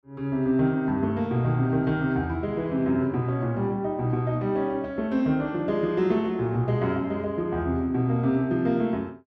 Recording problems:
none

